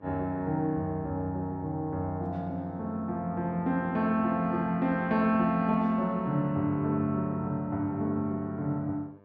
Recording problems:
hum; 50 Hz, harmonics up to 2.3 kHz, SNR 28 dB

